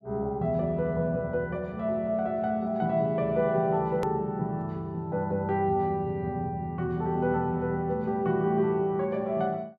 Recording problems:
edit click; at 4 s

